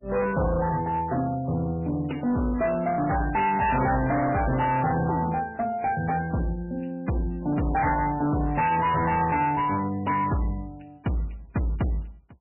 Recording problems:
lossy compression; MP3, log-spectral distance 4 dB, nothing above 2.7 kHz
distortion; hard clipping, signal-to-distortion ratio 7 dB

